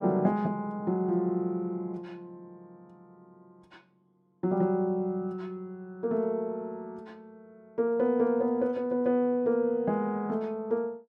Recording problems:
none

